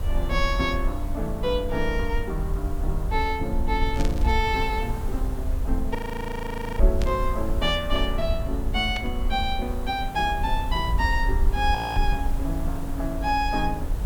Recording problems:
hiss; SNR 13 dB
rumble; below 58 Hz, SNR 2 dB
burst of static; at 4 s, at 7 s and at 9 s; peak -4 dB vs average level
audio freezing; at 6 s for 1 s and at 12 s

